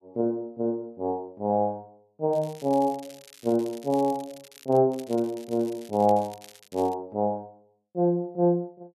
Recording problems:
crackle; from 2.5 to 5 s and from 5 to 7 s; loose cable, SNR 22 dB

